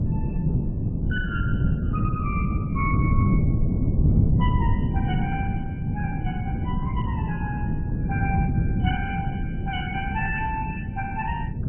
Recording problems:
lossy codec; MP3, then MP2, log-spectral distance 2 dB, nothing above 2.7 kHz
wind on the microphone; below 190 Hz, SNR -7 dB

